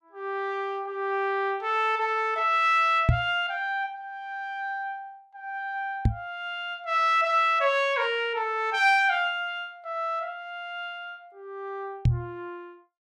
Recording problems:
microphone bump; at 3 s, at 6 s and at 12 s; peak +8 dB vs average level

